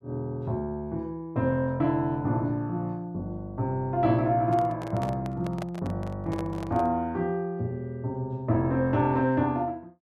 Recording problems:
handling noise; from 4.5 to 7 s; peak -4 dB vs average level

